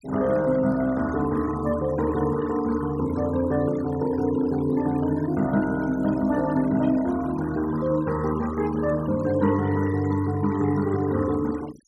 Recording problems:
denoising artefacts; signal-to-artefact ratio 18 dB

